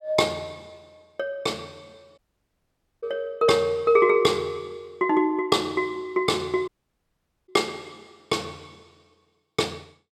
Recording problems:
audio cutting out; at 2 s for 1 s and at 6.5 s for 1 s

